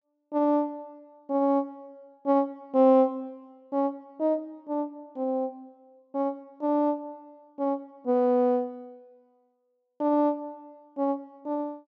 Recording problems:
low-pass filter; nothing above 7.6 kHz

